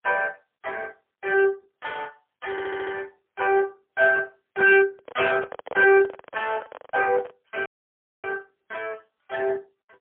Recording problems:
telephone audio; 260 Hz to 3.2 kHz, AMR-NB, then MP3
distorted audio; hard clipping, signal-to-distortion ratio 11 dB
audio stuttering; at 2.5 s
microphone handling noise; from 5 to 7.5 s; peak -5 dB vs average level
audio cutting out; at 7.5 s for 0.5 s

